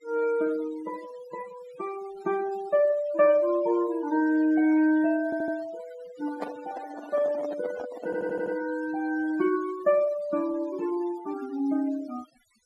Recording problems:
denoising artefacts; signal-to-artefact ratio 19 dB
stutter; at 5.5 s and at 8 s
handling noise; from 6 to 8.5 s; peak -4 dB vs average level

